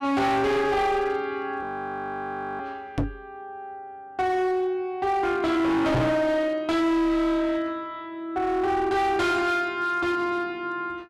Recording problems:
distortion; hard clipping, signal-to-distortion ratio 7 dB
frozen audio; at 1.5 s for 1 s
knock on the microphone; at 3 s and at 6 s; peak +5 dB vs average level

